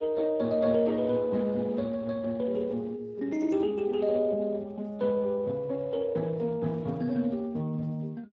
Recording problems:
lossy codec; Speex, log-spectral distance 2 dB

